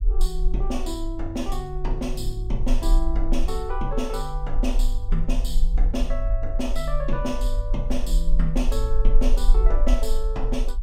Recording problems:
low-frequency rumble; below 38 Hz, strongest tone 18 Hz, SNR -3 dB

